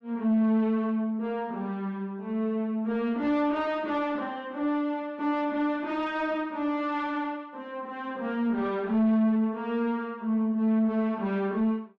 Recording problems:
distorted audio; soft clipping, signal-to-distortion ratio 11 dB

